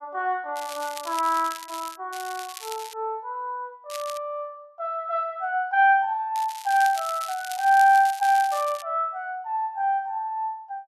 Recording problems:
crackle; 4 times, first at 0.5 s; loose cable, SNR 15 dB

